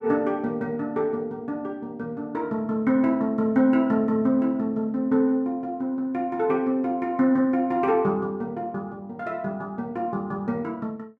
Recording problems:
none

